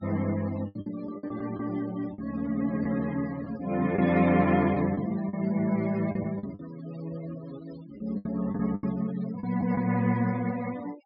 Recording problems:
treble cut off; nothing above 5.5 kHz
denoising artefacts; signal-to-artefact ratio 19 dB
packet loss; 7% of the sound replaced, filled with the last packet

